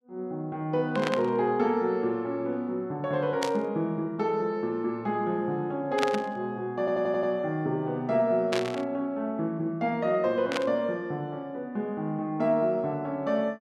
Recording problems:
burst of static; 5 times, first at 1 s; peak +3 dB vs average level
audio stuttering; at 7 s

